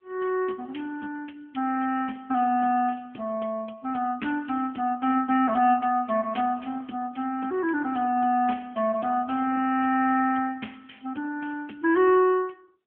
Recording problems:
telephone audio; 190 Hz to 3.3 kHz, AMR-NB

